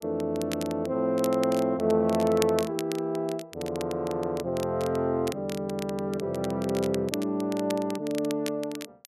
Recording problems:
crackle; vinyl, SNR 14 dB

